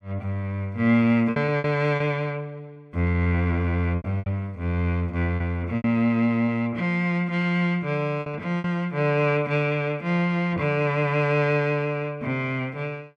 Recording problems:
lost packets; 5% of the sound replaced, filled with repeated pitch periods

